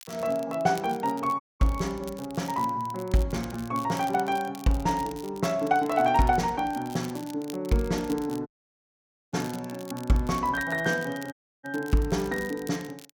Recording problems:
crackling; vinyl, SNR 19 dB
dropout; at 1.5 s, at 8.5 s for 1 s and at 11 s

